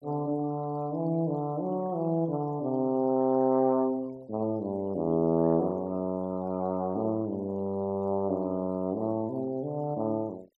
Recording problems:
noise reduction artefacts; signal-to-artefact ratio 28 dB

